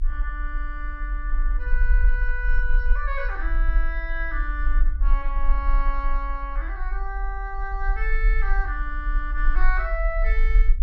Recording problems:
low-frequency rumble; below 42 Hz, SNR -5 dB

